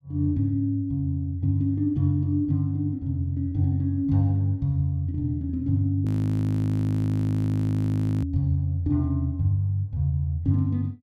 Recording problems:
audio freezing; at 6 s for 2 s

